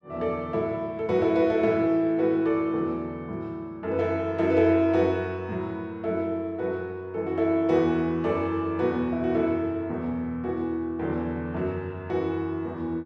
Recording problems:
none

